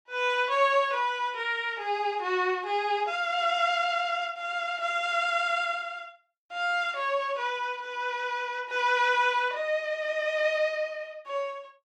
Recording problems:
none

